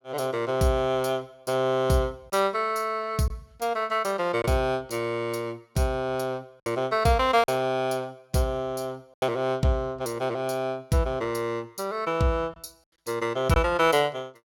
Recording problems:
lost packets; 1.7% of the sound replaced, filled with silence

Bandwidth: 18 kHz